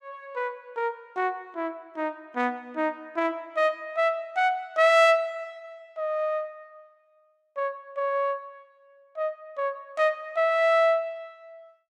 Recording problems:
none

